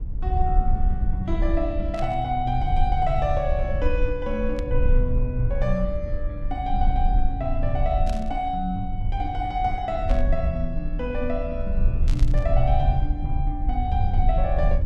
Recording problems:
low-frequency rumble; below 56 Hz, strongest tone 24 Hz, SNR 0 dB
static burst; 5 times, first at 2 s; peak -8 dB vs average level

